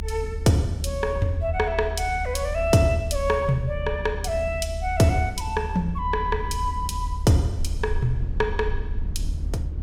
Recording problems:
rumble; below 76 Hz, SNR 7 dB
wind noise; below 170 Hz, SNR 15 dB

